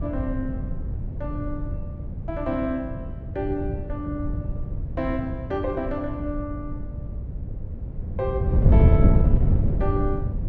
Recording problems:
wind on the microphone; below 140 Hz, SNR -4 dB

